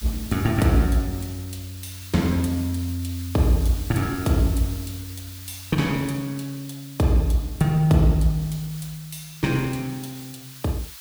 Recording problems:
background hiss; SNR 16 dB

